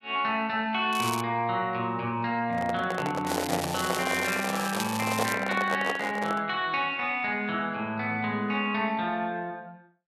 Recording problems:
crackle; at 1 s and from 3.5 to 5.5 s; loose cable, SNR 8 dB
handling noise; from 2.5 to 6.5 s; peak +2 dB vs average level

